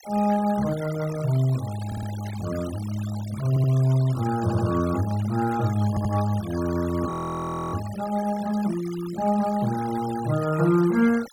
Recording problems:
noise reduction artefacts; signal-to-artefact ratio 17 dB
audio stuttering; 4 times, first at 2 s
static burst; at 2.5 s; peak -24 dB vs average level
audio freezing; at 7 s for 0.5 s

